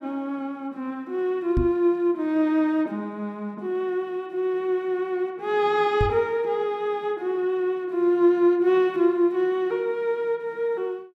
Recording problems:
knock on the microphone; at 1.5 s and at 6 s; peak +3 dB vs average level

